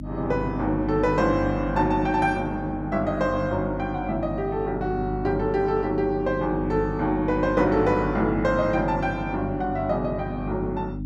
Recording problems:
hum; 50 Hz, harmonics up to 300 Hz, SNR 8 dB

